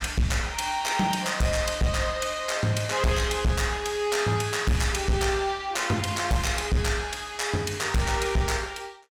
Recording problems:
distortion; hard clipping, signal-to-distortion ratio 10 dB

